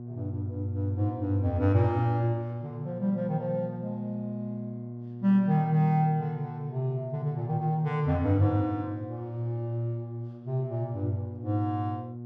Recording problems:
hum; 60 Hz, harmonics up to 720 Hz, SNR 12 dB

